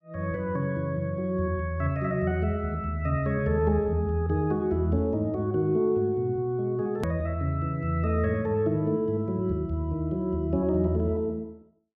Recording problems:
click at an edit; at 7 s

